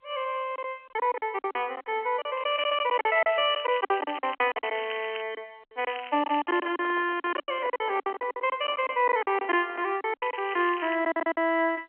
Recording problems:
telephone audio; 240 Hz to 3.1 kHz, G.711
packet loss; 15% of the sound replaced, filled with silence
crackling; from 2.5 to 5 s, at 6 s and at 10 s; loose cable, SNR 15 dB
handling noise; from 6.5 to 10 s; peak -11 dB vs average level

